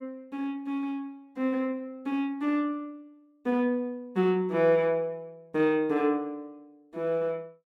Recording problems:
none

